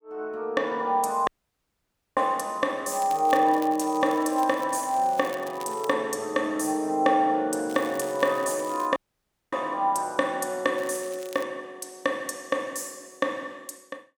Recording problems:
dropout; at 1.5 s for 1 s and at 9 s for 0.5 s
crackle; from 3 to 6 s, from 7.5 to 9 s and at 11 s; loose cable, SNR 20 dB

